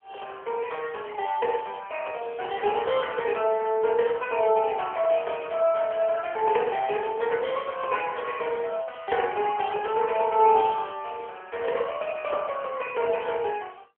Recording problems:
phone line; 370 Hz to 3.1 kHz, AMR-NB

